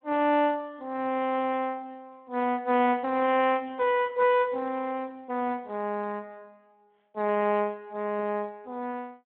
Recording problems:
telephone audio; 220 Hz to 3.4 kHz, Speex

